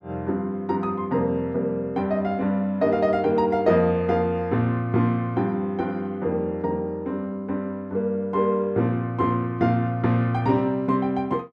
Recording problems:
none

